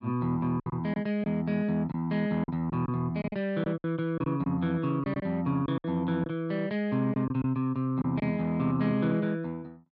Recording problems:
packet loss; 7% of the sound replaced, filled with silence

